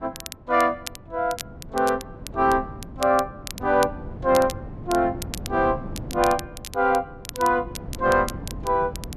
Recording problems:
wind on the microphone; below 260 Hz, SNR 14 dB
crackle; vinyl, SNR 15 dB

